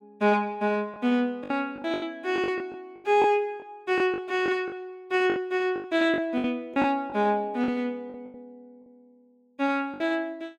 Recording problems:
lost packets; 11% of the sound replaced, filled with the last packet

